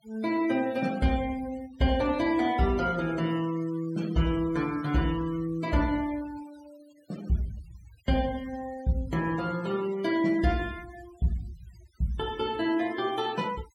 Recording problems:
denoising artefacts; signal-to-artefact ratio 20 dB

